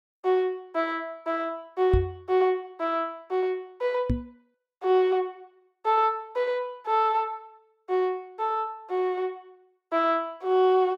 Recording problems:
microphone thump; at 2 s and at 4 s; peak +6 dB vs average level

